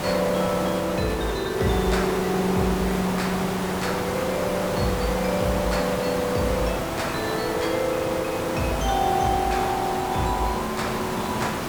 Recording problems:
background hiss; SNR 2 dB

